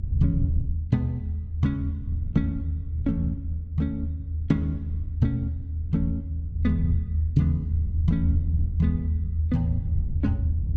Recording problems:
low-frequency rumble; below 82 Hz, strongest tone 80 Hz, SNR -1 dB

